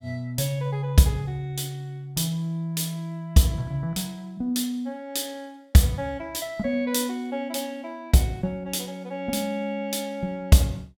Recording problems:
none

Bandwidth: 17 kHz